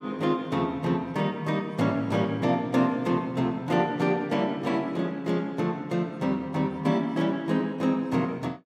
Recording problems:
none

